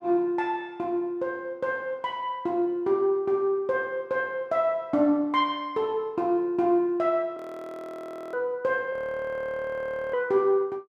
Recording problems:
frozen audio; at 7.5 s for 1 s and at 9 s for 1 s

